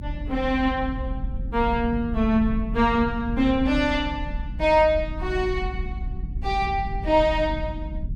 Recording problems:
low-frequency rumble; below 88 Hz, SNR 8 dB

